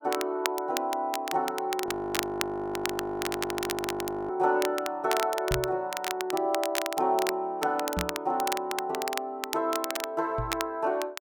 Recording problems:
crackle; vinyl, SNR 6 dB
audio freezing; at 2 s for 2.5 s
knock on the microphone; at 5.5 s, at 8 s and at 10 s; peak +1 dB vs average level

